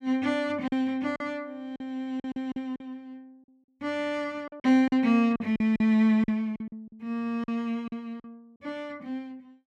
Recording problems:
packet loss; 9% of the sound replaced, filled with silence

